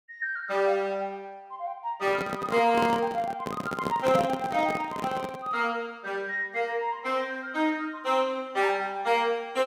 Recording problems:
handling noise; from 2 to 5.5 s; peak +2 dB vs average level

